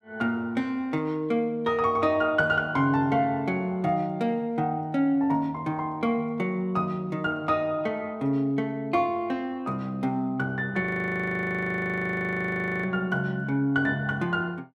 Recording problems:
audio freezing; at 11 s for 2 s

